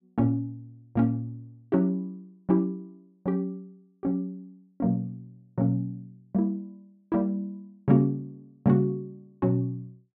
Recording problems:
none

